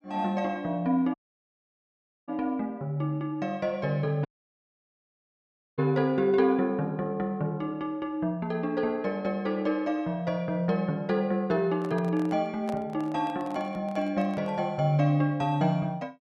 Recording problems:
dropout; at 1 s for 1 s and at 4.5 s for 1.5 s
handling noise; from 12 to 15 s; peak -6 dB vs average level

